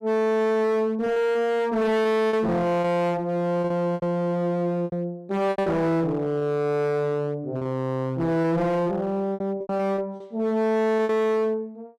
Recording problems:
distortion; hard clipping, uneven, signal-to-distortion ratio 7 dB
lost packets; 9% of the sound replaced, filled with repeated pitch periods

